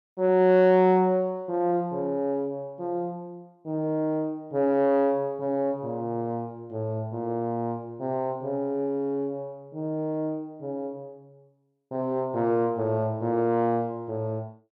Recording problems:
distortion; soft clipping, signal-to-distortion ratio 12 dB

